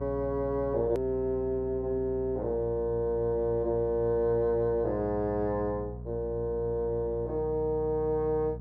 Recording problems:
hum; 60 Hz, harmonics up to 540 Hz, SNR 11 dB
hard cut with a click; at 1 s

